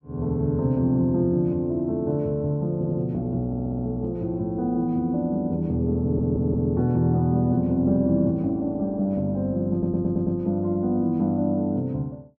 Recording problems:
audio stuttering; 4 times, first at 3 s

